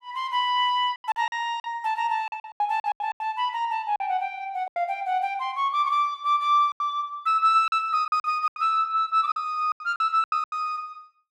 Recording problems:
packet loss; 12% of the sound replaced, filled with silence

